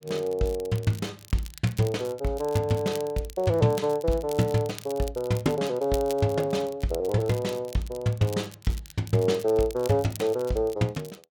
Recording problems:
crackle; vinyl, SNR 19 dB

